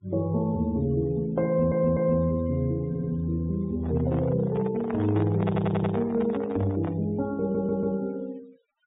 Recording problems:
treble cut off; nothing above 4 kHz
noise reduction artefacts; signal-to-artefact ratio 26 dB
audio stuttering; 4 times, first at 1.5 s
microphone handling noise; from 4 to 7 s; peak -2 dB vs average level

